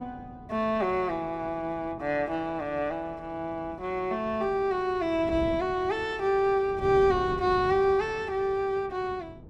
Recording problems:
wind on the microphone; below 300 Hz, SNR 16 dB

